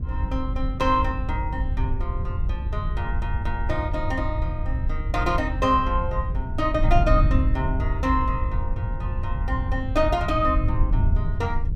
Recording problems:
electrical hum; 60 Hz, harmonics up to 1.1 kHz, SNR 21 dB
wind noise; below 90 Hz, SNR 0 dB

